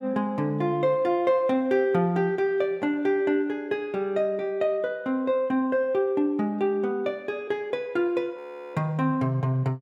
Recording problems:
frozen audio; at 8.5 s

